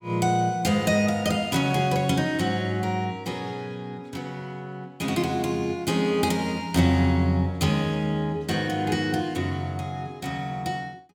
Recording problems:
none

